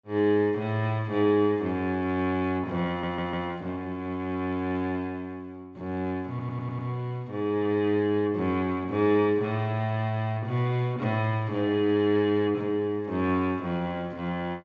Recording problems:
low-pass filter; nothing above 8 kHz
stutter; at 3 s and at 6.5 s

